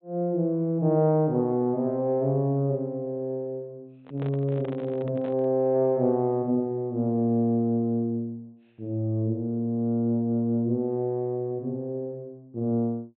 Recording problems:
low-pass filter; nothing above 4 kHz
handling noise; from 4 to 5.5 s; peak -9 dB vs average level

